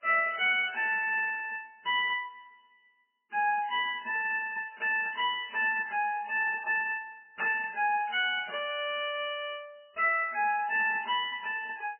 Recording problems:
codec artefacts; MP3, log-spectral distance 5 dB, nothing above 2.7 kHz

